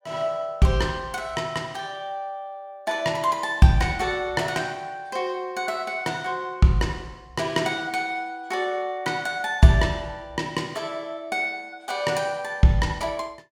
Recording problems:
none

